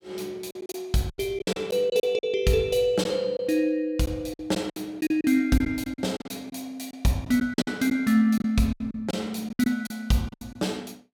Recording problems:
packet loss; 12% of the sound replaced, filled with silence

